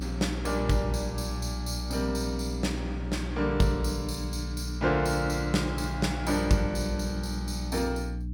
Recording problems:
electrical hum; 60 Hz, harmonics up to 300 Hz, SNR 5 dB

